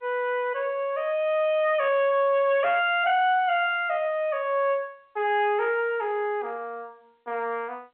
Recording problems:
telephone audio; 260 Hz to 3.3 kHz, G.711
distortion; hard clipping, uneven, signal-to-distortion ratio 10 dB

